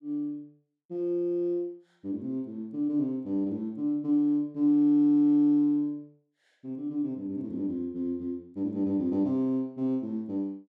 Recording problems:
none

